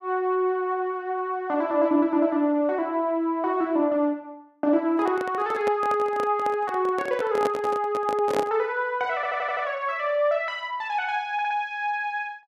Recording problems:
handling noise; from 5 to 8.5 s; peak 0 dB vs average level
stutter; at 9 s and at 11 s

